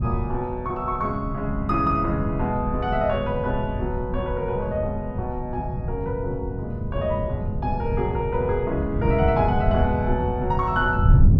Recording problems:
wind noise; below 140 Hz, SNR 3 dB

